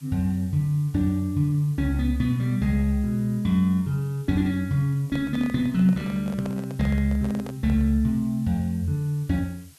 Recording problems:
background hiss; slope +1 dB per octave, SNR 27 dB
handling noise; from 5 to 8 s; peak -9 dB vs average level

